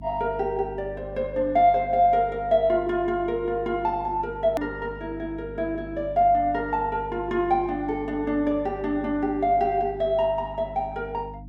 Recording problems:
electrical hum; 50 Hz, harmonics up to 300 Hz, SNR 17 dB
hard cut with a click; at 4.5 s

